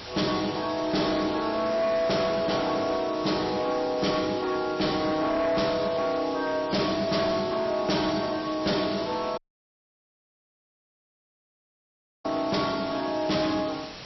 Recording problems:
lossy codec; MP3, log-spectral distance 12 dB, nothing above 5.7 kHz
distorted audio; hard clipping, signal-to-distortion ratio 10 dB
hiss; slope -2 dB per octave, SNR 14 dB
audio cutting out; at 9.5 s for 3 s

